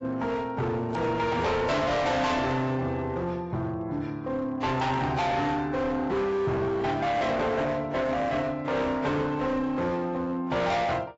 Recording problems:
lossy codec; AAC, log-spectral distance 2 dB, nothing above 7.6 kHz
distorted audio; hard clipping, signal-to-distortion ratio 6 dB
static burst; 4 times, first at 1 s; peak -15 dB vs average level

